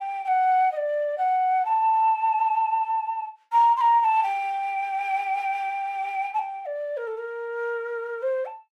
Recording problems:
none

